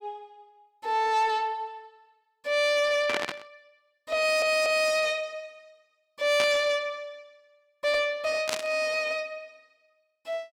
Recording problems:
distorted audio; soft clipping, signal-to-distortion ratio 11 dB
burst of static; at 3 s, at 6.5 s and at 8.5 s; peak +1 dB vs average level
audio stuttering; at 4 s

